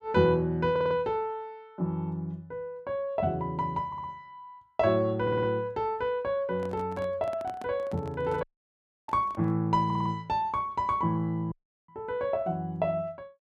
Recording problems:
stutter; 4 times, first at 0.5 s
handling noise; from 6.5 to 9.5 s; peak -10 dB vs average level
dropout; at 8.5 s for 0.5 s and at 12 s

